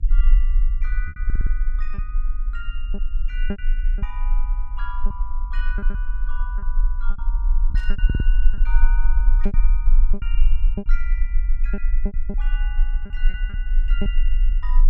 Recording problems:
hum; 50 Hz, harmonics up to 300 Hz, SNR 14 dB
low-frequency rumble; below 38 Hz, strongest tone 18 Hz, SNR -16 dB
packet loss; 9% of the sound replaced, filled with repeated pitch periods
audio stuttering; at 1 s and at 8 s
burst of static; at 8 s and at 9.5 s; peak -4 dB vs average level

